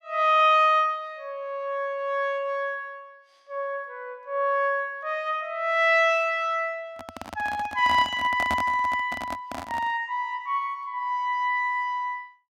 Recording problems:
handling noise; from 7 to 10 s; peak -2 dB vs average level

